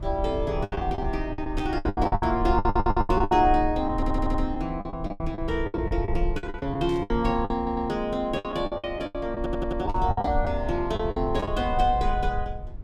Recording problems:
low-frequency rumble; below 70 Hz, SNR 7 dB
packet loss; 17% of the sound replaced, filled with the last packet
static burst; 4 times, first at 1.5 s; peak -13 dB vs average level
audio stuttering; 4 times, first at 2.5 s

